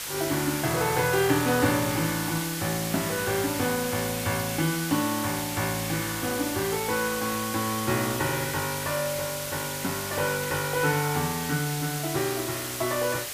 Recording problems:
background hiss; slope +1 dB per octave, SNR 4 dB

